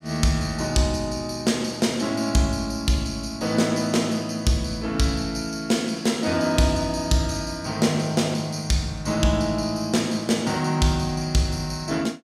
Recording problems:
none

